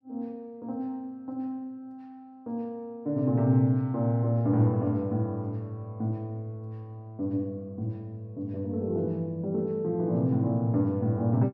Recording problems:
none

